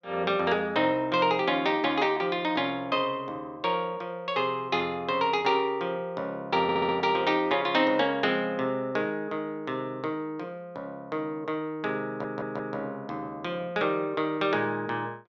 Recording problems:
audio stuttering; at 6.5 s and at 12 s

